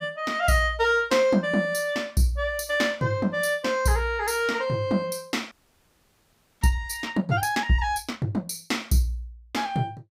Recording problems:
audio freezing; at 5.5 s for 1 s

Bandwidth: 15.5 kHz